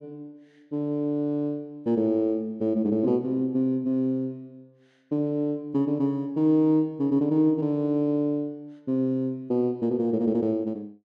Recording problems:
none

